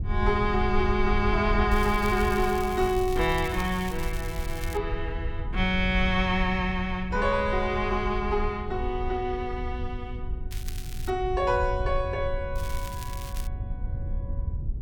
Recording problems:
rumble; below 78 Hz, SNR 6 dB
crackling; from 1.5 to 5 s, at 11 s and at 13 s; loose cable, SNR 16 dB

